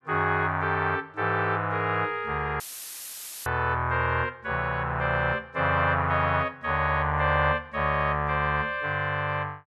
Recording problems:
audio cutting out; at 2.5 s for 1 s; filled with static

